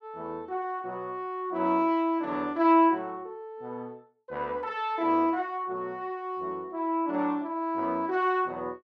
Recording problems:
none

